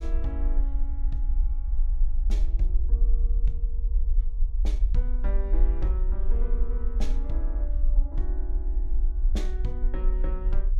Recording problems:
rumble; below 46 Hz, SNR -11 dB

